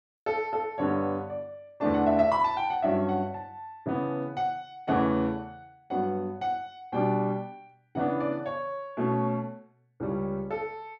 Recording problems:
none

